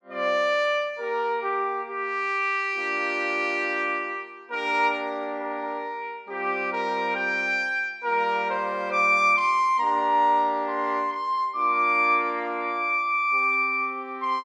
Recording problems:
none

